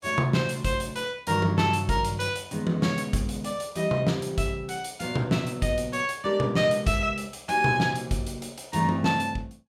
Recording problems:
none

